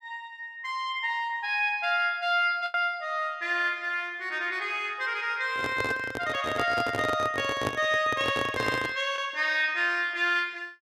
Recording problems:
lost packets; 0.9% of the sound replaced, filled with the last packet
microphone handling noise; from 5.5 to 9 s; peak +1 dB vs average level

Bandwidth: 13.5 kHz